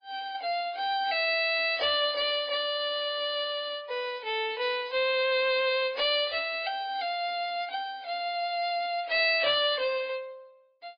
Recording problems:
codec artefacts; MP3, log-spectral distance 4 dB, nothing above 4.2 kHz
distortion; hard clipping, uneven, signal-to-distortion ratio 10 dB

